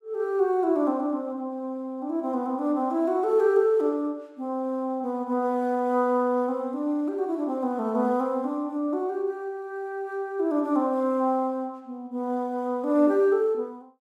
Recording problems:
none

